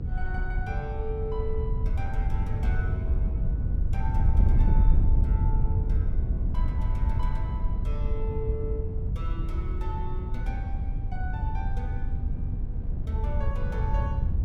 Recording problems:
electrical hum; 60 Hz, harmonics up to 960 Hz, SNR 7 dB
wind noise; below 86 Hz, SNR -11 dB

